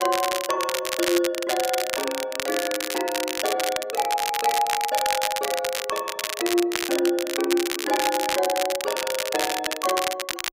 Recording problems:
crackle; vinyl, SNR 3 dB

